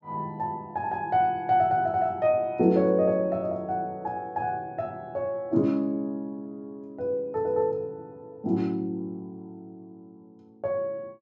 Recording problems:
treble cut off; nothing above 8 kHz

